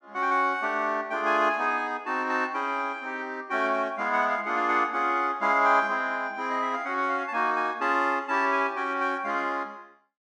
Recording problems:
none

